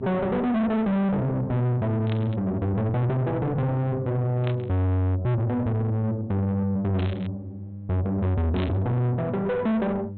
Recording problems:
treble cut off; nothing above 4 kHz
distortion; soft clipping, signal-to-distortion ratio 6 dB
mains hum; 50 Hz, harmonics up to 500 Hz, SNR 16 dB
burst of static; 4 times, first at 2 s; peak -8 dB vs average level

